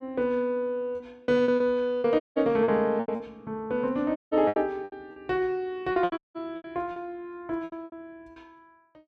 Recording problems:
lost packets; 12% of the sound replaced, filled with repeated pitch periods
audio cutting out; at 2 s, at 4 s and at 6 s

